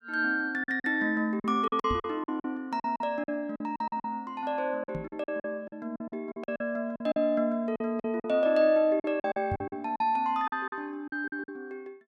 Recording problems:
lost packets; 14% of the sound replaced, filled with silence
microphone thump; at 2 s, at 5 s and at 9.5 s; peak -1 dB vs average level

